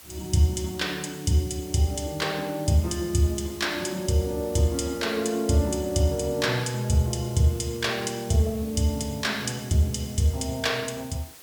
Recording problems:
background hiss; slope -1 dB per octave, SNR 18 dB

